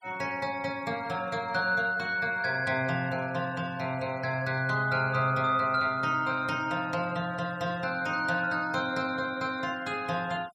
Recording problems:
noise reduction artefacts; signal-to-artefact ratio 22 dB

